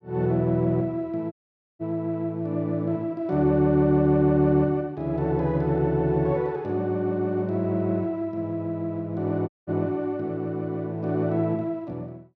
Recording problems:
audio cutting out; at 1.5 s and at 9.5 s

